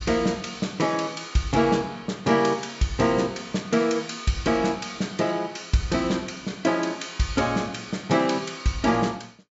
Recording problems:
low-pass filter; nothing above 8 kHz

